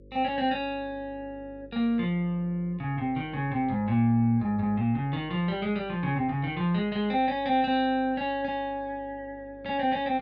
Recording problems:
mains hum; 50 Hz, harmonics up to 550 Hz, SNR 24 dB

